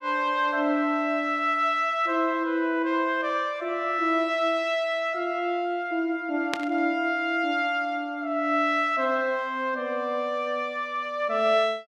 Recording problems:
static burst; at 6.5 s; peak +1 dB vs average level

